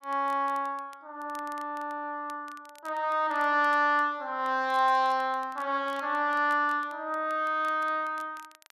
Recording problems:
crackle; vinyl, SNR 28 dB

